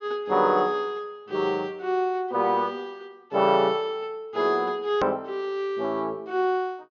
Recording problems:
low-pass filter; nothing above 6.7 kHz
edit click; at 5 s

